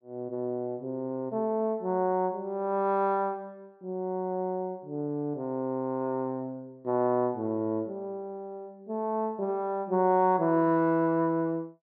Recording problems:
treble missing; nothing above 6.6 kHz

